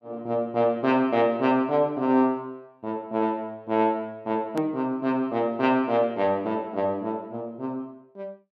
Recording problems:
hard cut with a click; at 4.5 s

